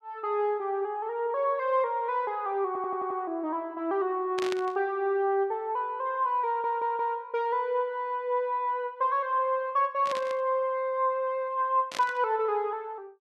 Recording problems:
stutter; at 2.5 s and at 6.5 s
burst of static; at 4.5 s, at 10 s and at 12 s; peak -3 dB vs average level

